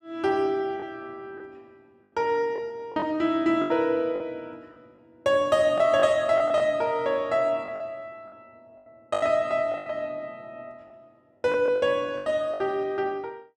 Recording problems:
lost packets; 8% of the sound replaced, filled with the last packet

